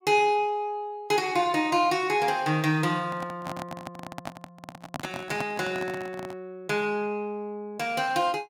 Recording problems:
microphone handling noise; from 3 to 6.5 s; peak -2 dB vs average level

